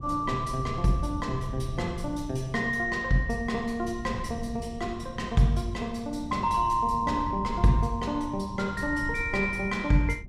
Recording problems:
wind noise; below 140 Hz, SNR 12 dB

